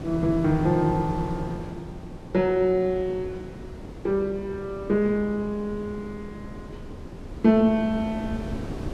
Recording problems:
wind noise; below 360 Hz, SNR 13 dB

